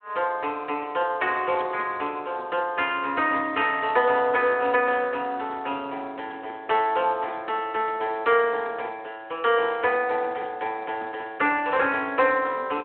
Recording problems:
telephone audio; 280 Hz to 3.3 kHz, Speex

